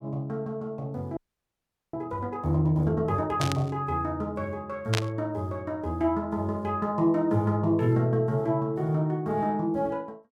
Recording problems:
audio freezing; at 1 s for 1 s
static burst; at 3.5 s and at 5 s; peak +4 dB vs average level

